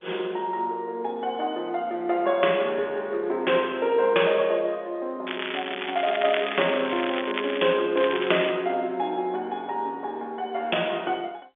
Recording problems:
phone line; 280 Hz to 3.5 kHz, G.711
crackling; from 5.5 to 7.5 s and at 8 s; loose cable, SNR 6 dB

